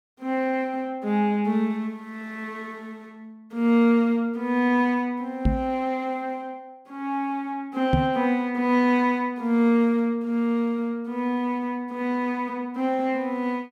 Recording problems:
microphone thump; at 5.5 s and at 8 s; peak +6 dB vs average level

